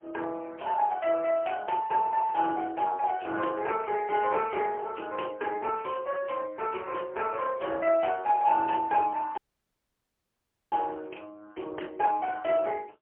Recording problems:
phone line; 300 Hz to 3.1 kHz, AMR-NB, then MP3
dropout; at 9.5 s for 1.5 s

